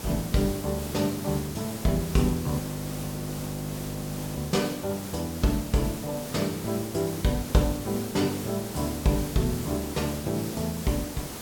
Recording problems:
background hiss; SNR 8 dB
audio freezing; at 2.5 s for 2 s

